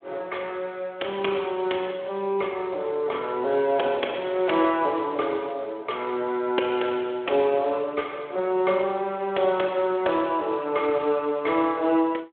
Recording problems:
phone line; 300 Hz to 3.5 kHz, Speex

